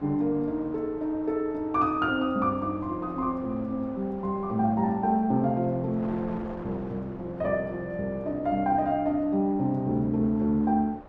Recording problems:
wind on the microphone; below 880 Hz, SNR 19 dB

